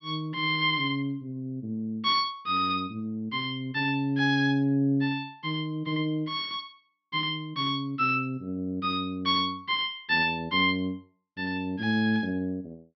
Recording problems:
treble cut off; nothing above 5.9 kHz

